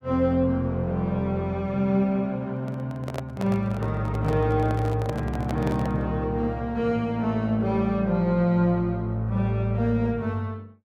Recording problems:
microphone handling noise; from 2.5 to 6 s; peak -4 dB vs average level

